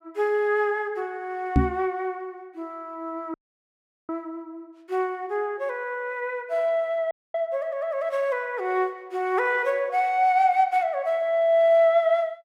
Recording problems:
knock on the microphone; at 1.5 s; peak +8 dB vs average level
audio cutting out; at 3.5 s for 1 s and at 7 s

